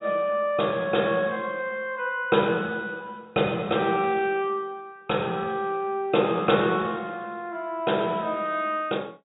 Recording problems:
treble missing; nothing above 4 kHz

